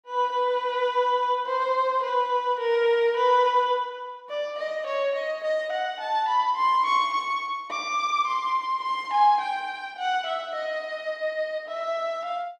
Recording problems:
none

